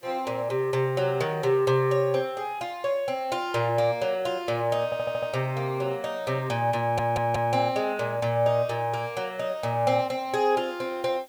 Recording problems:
hiss; SNR 30 dB
stutter; at 5 s and at 7 s

